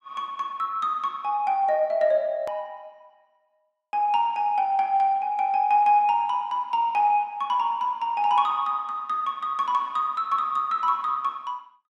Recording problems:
hard cut with a click; at 2.5 s

